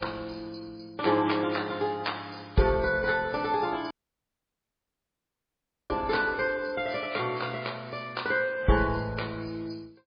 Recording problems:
lossy compression; MP3, log-spectral distance 6 dB
audio cutting out; at 4 s for 2 s

